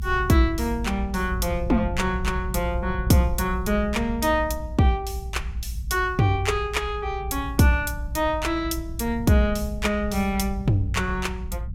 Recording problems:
low-frequency rumble; below 74 Hz, strongest tone 56 Hz, SNR 8 dB

